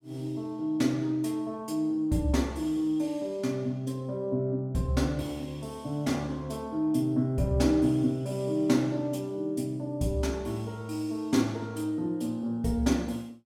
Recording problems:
none

